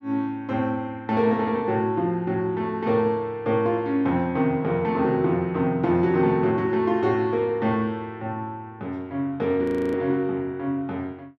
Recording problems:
frozen audio; at 9.5 s

